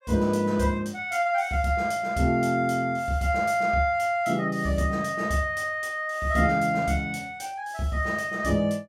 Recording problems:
none

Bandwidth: 16 kHz